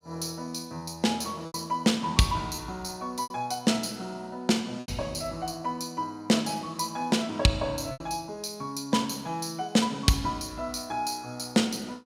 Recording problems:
packet loss; 3% of the sound replaced, filled with repeated pitch periods

